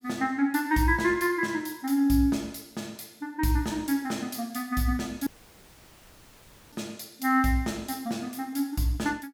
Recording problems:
dropout; at 5.5 s for 1.5 s

